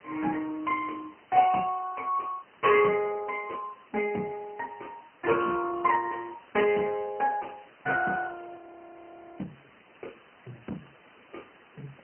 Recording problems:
telephone audio; 150 Hz to 3.1 kHz, AMR-NB
hiss; SNR 27 dB
audio freezing; at 8.5 s for 1 s

